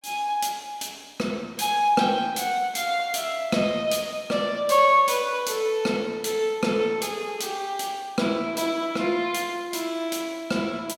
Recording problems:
none

